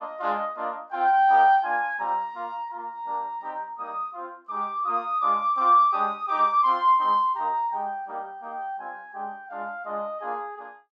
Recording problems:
none

